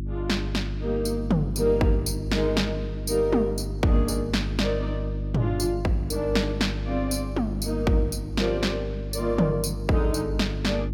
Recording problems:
electrical hum; 50 Hz, harmonics up to 350 Hz, SNR 6 dB

